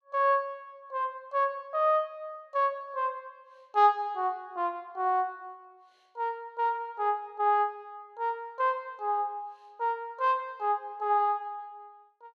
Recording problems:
none

